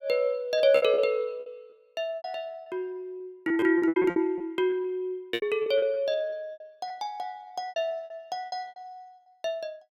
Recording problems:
lost packets; 15% of the sound replaced, filled with repeated pitch periods

